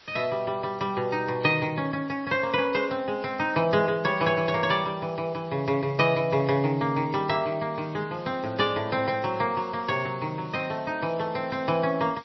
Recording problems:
lossy codec; MP3, log-spectral distance 5 dB, nothing above 5.7 kHz
background hiss; slope 0 dB per octave, SNR 26 dB

